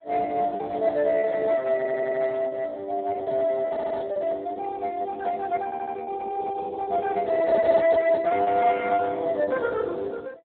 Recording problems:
telephone audio; 300 Hz to 2 kHz, Speex
packet loss; 8% of the sound replaced, filled with repeated pitch periods
stutter; at 2 s, at 3.5 s and at 5.5 s

